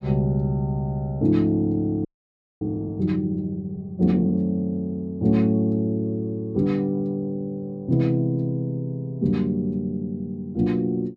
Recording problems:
audio freezing; at 2 s for 0.5 s

